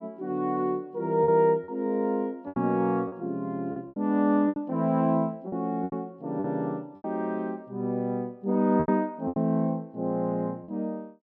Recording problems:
lost packets; 8% of the sound replaced, filled with repeated pitch periods

